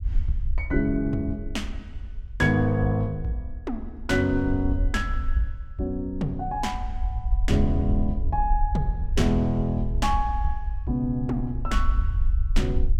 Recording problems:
rumble; below 58 Hz, SNR 4 dB

